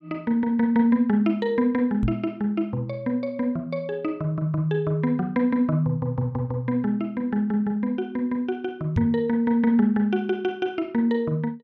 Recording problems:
microphone bump; at 2 s and at 9 s; peak +4 dB vs average level

